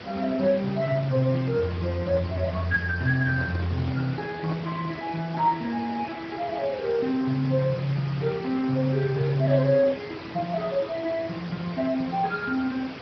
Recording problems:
treble cut off; nothing above 5.5 kHz
lossy compression; Speex, log-spectral distance 7 dB
background hiss; SNR 13 dB
microphone handling noise; from 3 to 5 s; peak -5 dB vs average level

